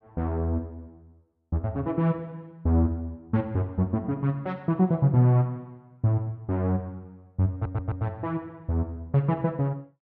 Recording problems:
stutter; at 7.5 s

